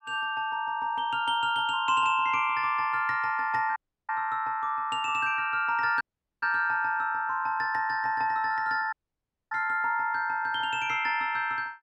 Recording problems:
audio cutting out; at 4 s, at 6 s and at 9 s for 0.5 s

